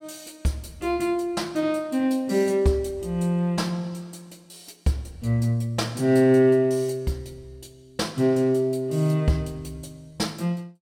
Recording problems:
none

